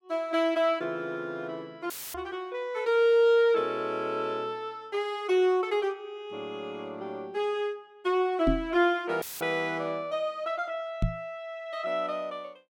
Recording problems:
dropout; at 2 s and at 9 s; filled with static
knock on the microphone; at 2 s, at 8.5 s and at 11 s; peak +5 dB vs average level

